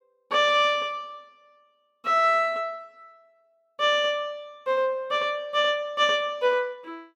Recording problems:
none

